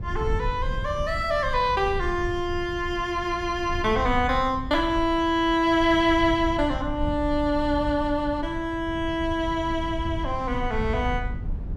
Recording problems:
rumble; below 92 Hz, SNR 10 dB

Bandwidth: 14.5 kHz